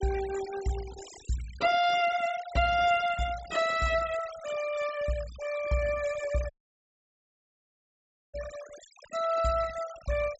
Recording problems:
low-pass filter; nothing above 7.8 kHz
noise reduction artefacts; signal-to-artefact ratio 15 dB
audio cutting out; at 6.5 s for 2 s

